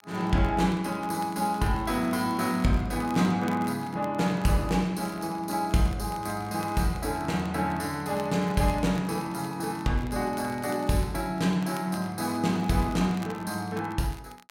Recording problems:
crackling; vinyl, SNR 23 dB

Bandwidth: 16 kHz